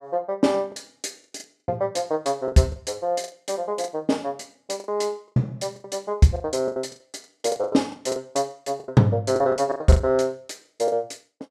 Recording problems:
lost packets; 14% of the sound replaced, filled with the last packet

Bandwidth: 12.5 kHz